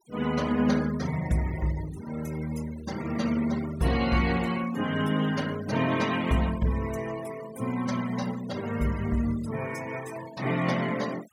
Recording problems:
noise reduction artefacts; signal-to-artefact ratio 16 dB

